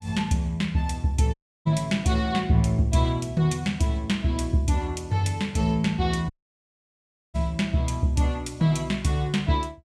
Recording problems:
audio cutting out; at 1.5 s and at 6.5 s for 1 s

